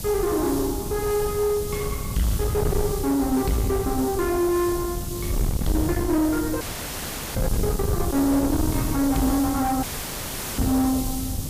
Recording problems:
distortion; soft clipping, signal-to-distortion ratio 7 dB
mains hum; 50 Hz, harmonics up to 300 Hz, SNR 17 dB
background hiss; SNR 11 dB
wind on the microphone; below 270 Hz, SNR 6 dB
dropout; at 6.5 s for 0.5 s and at 10 s for 1 s

